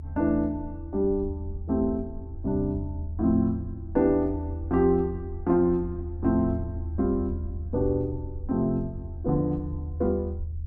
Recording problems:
low-frequency rumble; below 82 Hz, strongest tone 80 Hz, SNR 9 dB

